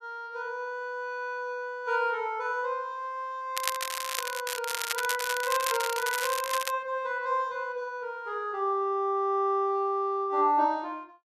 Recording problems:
crackling; from 3.5 to 6.5 s; loose cable, SNR 3 dB

